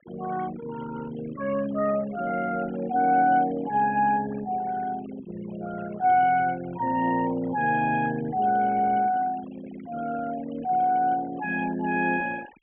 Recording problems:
treble missing; nothing above 3.3 kHz
denoising artefacts; signal-to-artefact ratio 18 dB

